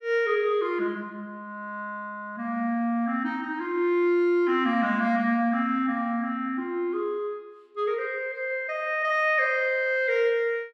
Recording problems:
none

